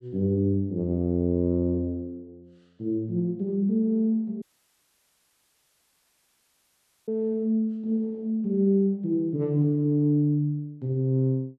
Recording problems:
audio cutting out; at 4.5 s for 2.5 s

